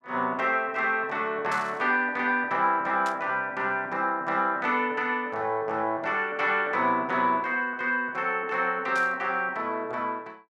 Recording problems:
static burst; at 1.5 s, at 3 s and at 9 s; peak -10 dB vs average level

